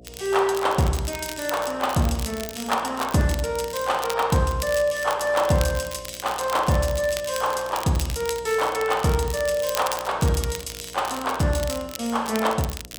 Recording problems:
mains hum; 60 Hz, harmonics up to 720 Hz, SNR 24 dB
crackling; vinyl, SNR 12 dB

